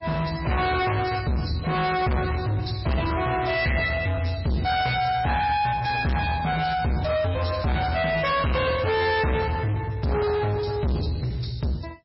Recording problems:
codec artefacts; MP3, log-spectral distance 6 dB, nothing above 5.3 kHz
distortion; soft clipping, signal-to-distortion ratio 6 dB

